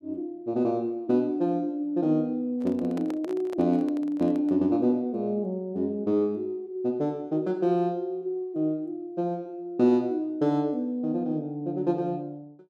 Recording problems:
handling noise; from 2.5 to 4.5 s; peak -8 dB vs average level

